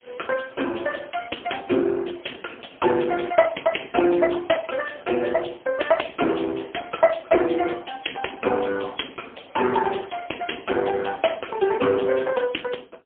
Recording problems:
phone line; 240 Hz to 3.3 kHz, AMR-NB, then MP3

